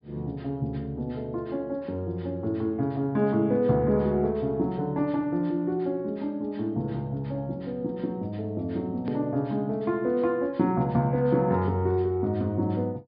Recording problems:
treble missing; nothing above 5.5 kHz
edit click; at 9 s

